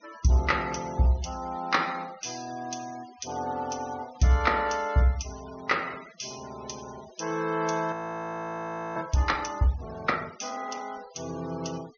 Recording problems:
treble missing; nothing above 6.4 kHz
noise reduction artefacts; signal-to-artefact ratio 19 dB
audio freezing; at 8 s for 1 s

